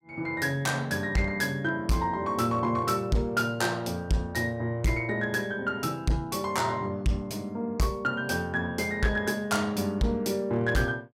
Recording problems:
distorted audio; hard clipping, signal-to-distortion ratio 12 dB

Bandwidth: 16 kHz